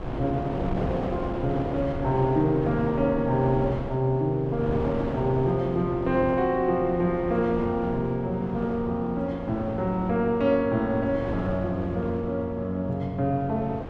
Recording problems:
wind noise; below 580 Hz, SNR 8 dB

